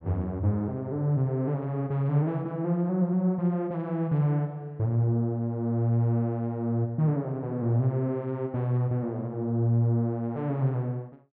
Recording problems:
none

